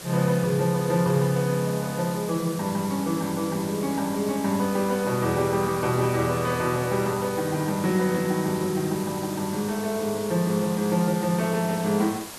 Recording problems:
background hiss; slope -2 dB per octave, SNR 13 dB

